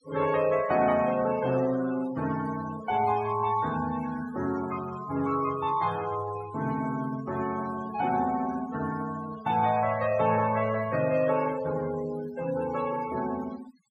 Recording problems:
noise reduction artefacts; signal-to-artefact ratio 16 dB

